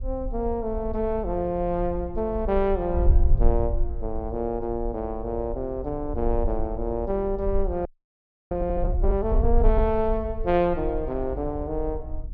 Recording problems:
low-pass filter; nothing above 8 kHz
wind noise; below 58 Hz, SNR 4 dB
audio freezing; at 8 s for 0.5 s

